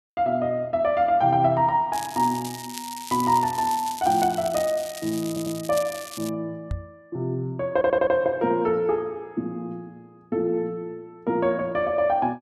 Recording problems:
crackle; from 2 to 6.5 s; loose cable, SNR 13 dB
audio stuttering; at 5.5 s and at 7.5 s
microphone thump; at 6.5 s; peak -2 dB vs average level

